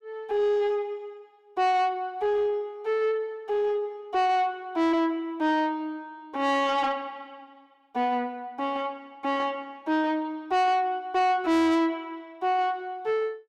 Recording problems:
distortion; soft clipping, signal-to-distortion ratio 10 dB

